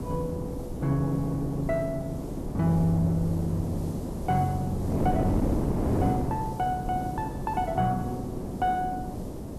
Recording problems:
hiss; slope +6 dB per octave, SNR 23 dB
wind noise; below 380 Hz, SNR 3 dB

